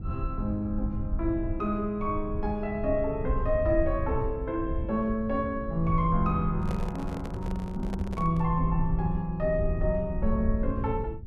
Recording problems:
rumble; below 88 Hz, SNR 5 dB
microphone handling noise; from 6.5 to 8.5 s; peak -4 dB vs average level

